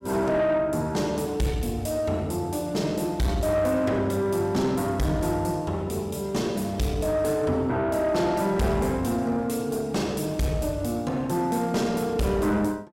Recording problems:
distorted audio; soft clipping, signal-to-distortion ratio 10 dB

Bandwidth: 16 kHz